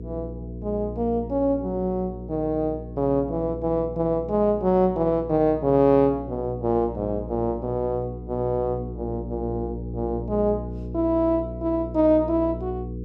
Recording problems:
hum; 60 Hz, harmonics up to 480 Hz, SNR 11 dB

